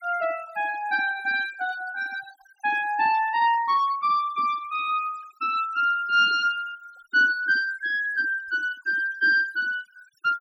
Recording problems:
denoising artefacts; signal-to-artefact ratio 18 dB

